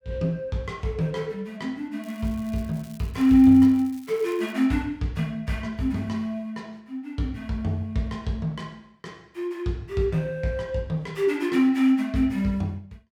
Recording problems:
crackle; from 2 to 4.5 s; loose cable, SNR 26 dB

